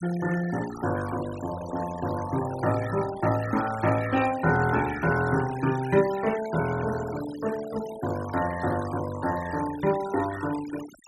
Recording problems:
noise reduction artefacts; signal-to-artefact ratio 14 dB

